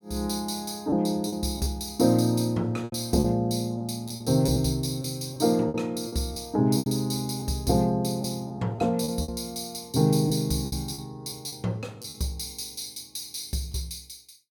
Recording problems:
packet loss; 8% of the sound replaced, filled with repeated pitch periods

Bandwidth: 17 kHz